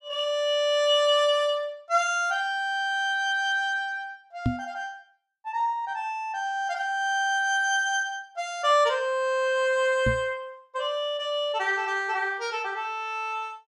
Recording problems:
microphone bump; at 4.5 s and at 10 s; peak +4 dB vs average level

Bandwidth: 14.5 kHz